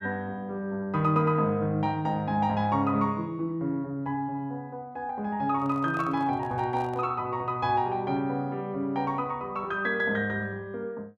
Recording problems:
handling noise; from 5.5 to 7 s; peak -9 dB vs average level

